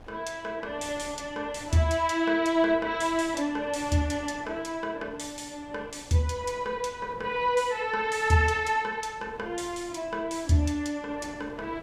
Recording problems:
wind on the microphone; below 710 Hz, SNR 21 dB

